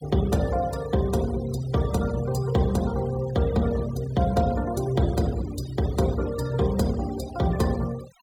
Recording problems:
denoising artefacts; signal-to-artefact ratio 18 dB

